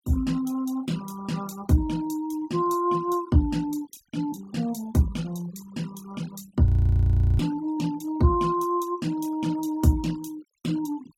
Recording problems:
denoising artefacts; signal-to-artefact ratio 22 dB
audio freezing; at 6.5 s for 0.5 s

